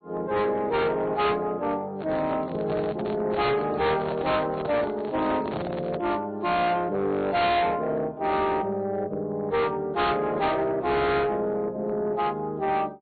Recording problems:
low-pass filter; nothing above 4.4 kHz
lossy compression; MP3, then AAC, log-spectral distance 2 dB
distortion; soft clipping, signal-to-distortion ratio 6 dB
handling noise; from 2 to 6 s; peak -2 dB vs average level

